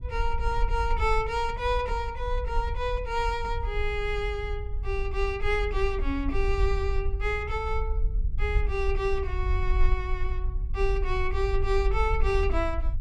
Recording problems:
rumble; below 54 Hz, SNR 2 dB

